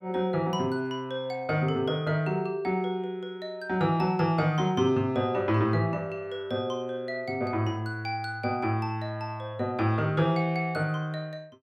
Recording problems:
none

